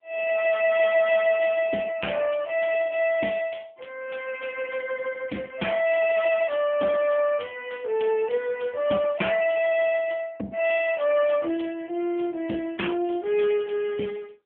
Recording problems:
telephone audio; 220 Hz to 3.3 kHz, AMR-NB

